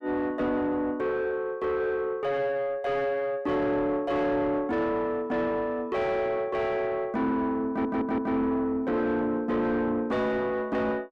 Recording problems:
distortion; soft clipping, signal-to-distortion ratio 10 dB
stutter; at 7.5 s

